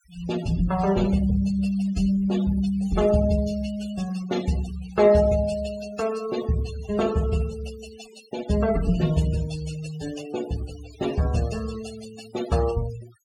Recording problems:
denoising artefacts; signal-to-artefact ratio 15 dB

